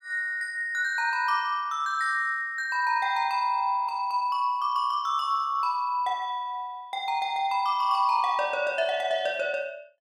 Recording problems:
none

